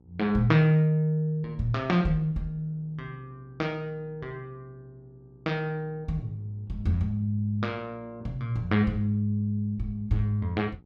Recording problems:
electrical hum; 60 Hz, harmonics up to 960 Hz, SNR 28 dB

